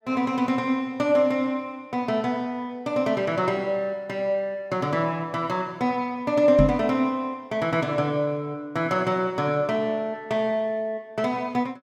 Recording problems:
knock on the microphone; at 6.5 s; peak +6 dB vs average level

